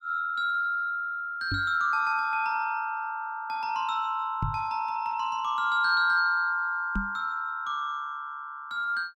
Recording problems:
knock on the microphone; at 1.5 s, at 4.5 s and at 7 s; peak 0 dB vs average level

